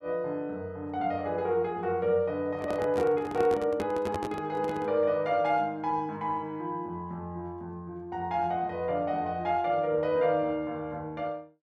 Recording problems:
handling noise; from 2.5 to 5 s; peak -1 dB vs average level

